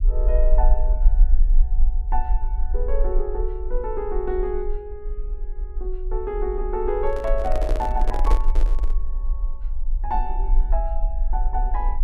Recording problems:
low-frequency rumble; below 40 Hz, strongest tone 22 Hz, SNR -3 dB
microphone handling noise; from 7 to 9 s; peak +3 dB vs average level

